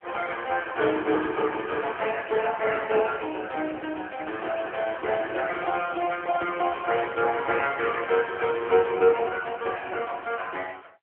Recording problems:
telephone audio; 280 Hz to 3.2 kHz, AMR-NB

